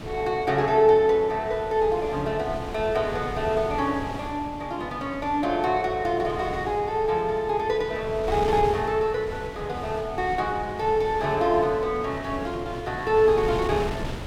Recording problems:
wind on the microphone; below 670 Hz, SNR 12 dB

